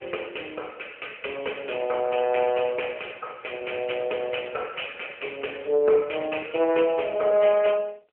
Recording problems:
phone line; 340 Hz to 3.1 kHz, AMR-NB

